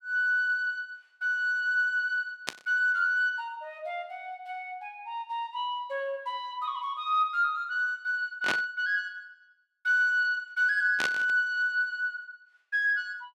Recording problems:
static burst; at 2.5 s, at 8.5 s and at 11 s; peak +3 dB vs average level

